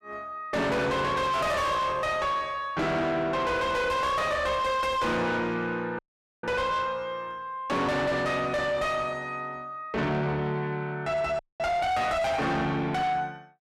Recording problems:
distortion; soft clipping, signal-to-distortion ratio 5 dB
dropout; at 6 s and at 11 s

